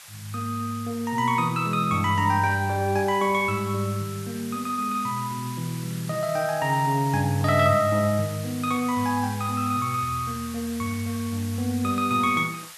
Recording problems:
hiss; SNR 15 dB

